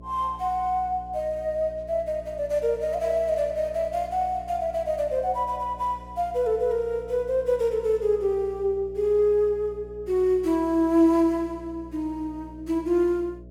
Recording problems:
hum; 60 Hz, harmonics up to 660 Hz, SNR 20 dB

